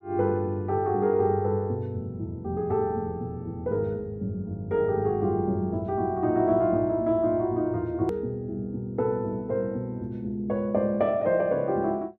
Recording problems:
hard cut with a click; at 8 s

